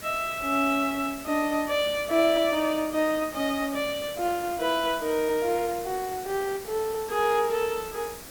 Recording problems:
hiss; slope -3 dB per octave, SNR 14 dB

